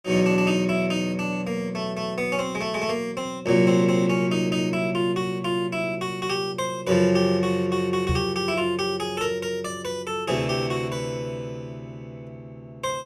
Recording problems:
knock on the microphone; at 8 s; peak +2 dB vs average level

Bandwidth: 15.5 kHz